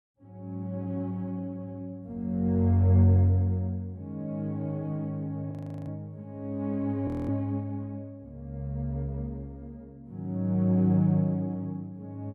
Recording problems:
frozen audio; at 5.5 s and at 7 s

